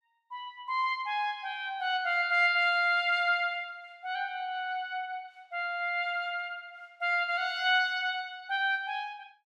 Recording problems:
none

